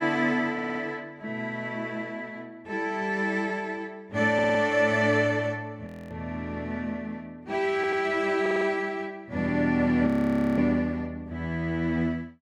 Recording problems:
audio stuttering; 4 times, first at 0.5 s
frozen audio; at 6 s and at 10 s for 0.5 s

